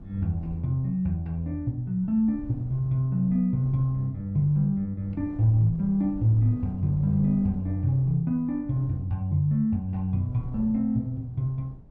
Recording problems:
wind on the microphone; below 160 Hz, SNR 17 dB

